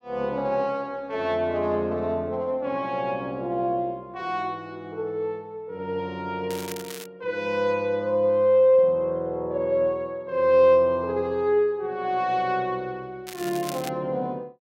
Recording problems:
crackle; at 6.5 s and at 13 s; loose cable, SNR 15 dB

